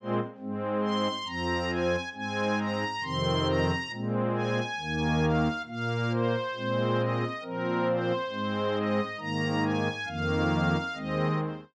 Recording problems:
none

